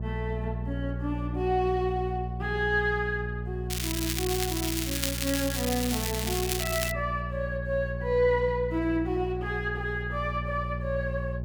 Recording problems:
hum; 60 Hz, harmonics up to 600 Hz, SNR 4 dB
crackle; from 3.5 to 7 s; loose cable, SNR 1 dB

